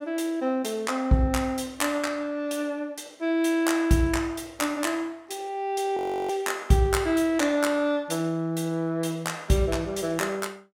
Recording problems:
audio freezing; at 6 s

